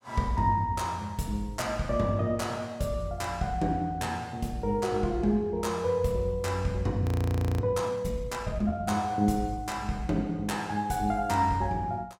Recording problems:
audio freezing; at 7 s for 0.5 s

